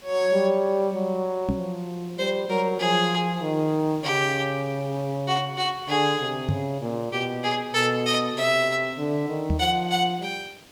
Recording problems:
hiss; SNR 24 dB
microphone bump; at 1.5 s, at 6.5 s and at 9.5 s; peak +3 dB vs average level

